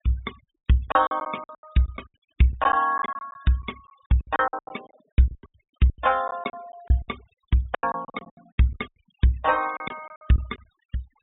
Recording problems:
treble missing; nothing above 4 kHz
denoising artefacts; signal-to-artefact ratio 24 dB
packet loss; 18% of the sound replaced, filled with silence

